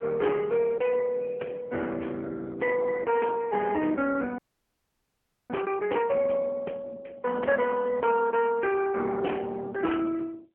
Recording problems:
telephone audio; 280 Hz to 2.9 kHz, AMR-NB
audio freezing; at 4.5 s for 1 s

